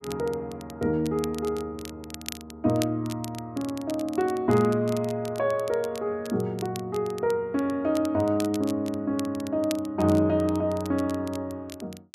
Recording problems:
crackle; vinyl, SNR 17 dB

